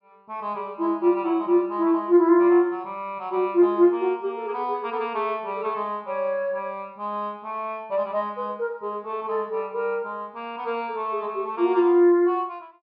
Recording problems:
low-pass filter; nothing above 5.5 kHz

